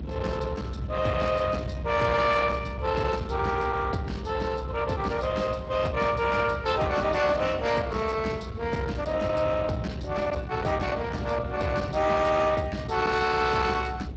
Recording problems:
codec artefacts; Speex, log-spectral distance 3 dB
distortion; soft clipping, signal-to-distortion ratio 11 dB
low-frequency rumble; below 480 Hz, SNR 9 dB

